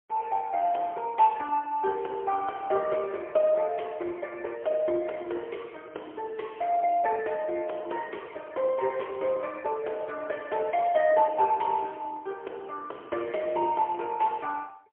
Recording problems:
phone line; 320 Hz to 3.3 kHz, AMR-NB, then MP3

